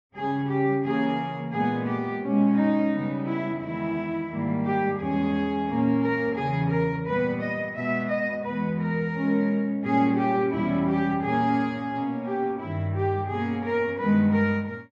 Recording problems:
none

